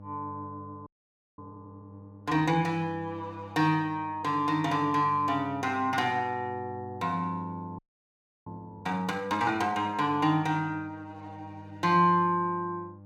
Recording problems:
electrical hum; 50 Hz, harmonics up to 900 Hz, SNR 19 dB
audio freezing; at 1 s for 0.5 s and at 8 s for 0.5 s

